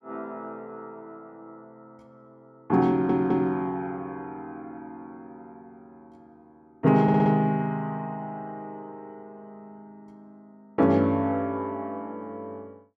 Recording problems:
stutter; at 3 s and at 7 s

